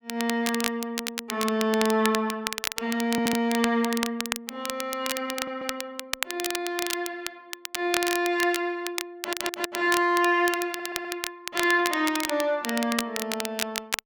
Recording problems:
crackling; vinyl, SNR 5 dB
stutter; 4 times, first at 3 s

